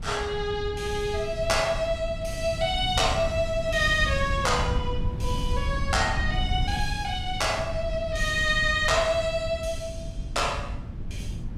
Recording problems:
wind noise; below 120 Hz, SNR 7 dB

